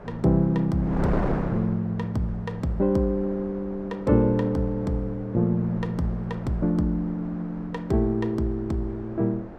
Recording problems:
wind noise; below 620 Hz, SNR 12 dB

